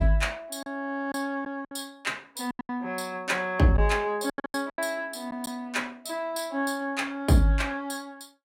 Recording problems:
lost packets; 7% of the sound replaced, filled with silence

